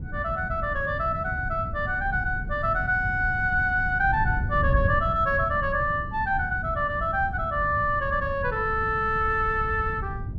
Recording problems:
wind on the microphone; below 120 Hz, SNR 8 dB

